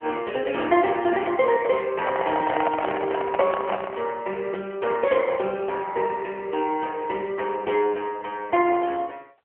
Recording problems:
phone line; 320 Hz to 3.1 kHz, AMR-NB
microphone handling noise; from 2 to 4 s; peak +3 dB vs average level

